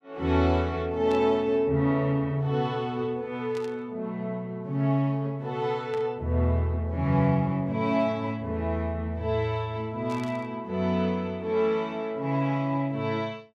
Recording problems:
burst of static; 4 times, first at 1 s; peak -13 dB vs average level

